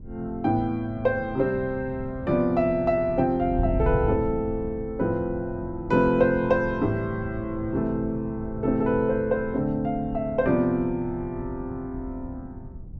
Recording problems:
wind noise; below 140 Hz, SNR 11 dB

